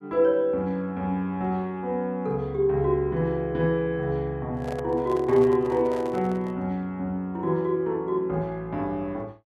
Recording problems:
microphone handling noise; from 4.5 to 6.5 s; peak -7 dB vs average level

